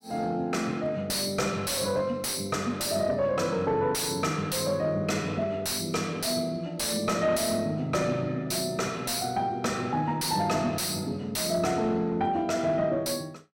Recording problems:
distortion; soft clipping, signal-to-distortion ratio 7 dB

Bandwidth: 16.5 kHz